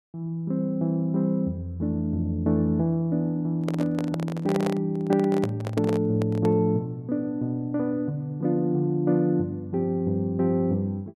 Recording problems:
handling noise; from 3.5 to 6.5 s; peak -1 dB vs average level

